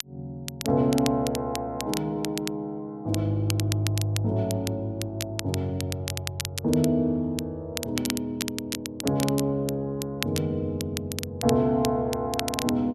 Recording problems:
crackling; vinyl, SNR 8 dB

